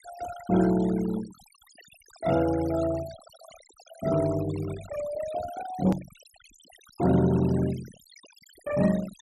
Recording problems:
denoising artefacts; signal-to-artefact ratio 18 dB
click at an edit; at 6 s

